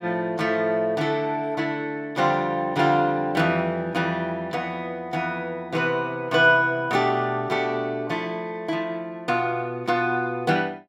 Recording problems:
none

